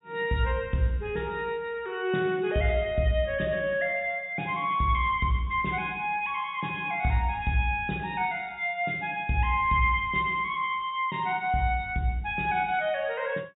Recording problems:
treble missing; nothing above 4 kHz

